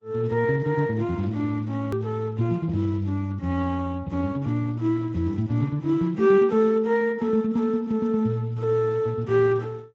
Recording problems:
lossy compression; Opus, then Speex, log-spectral distance 2 dB
hard cut with a click; at 2 s

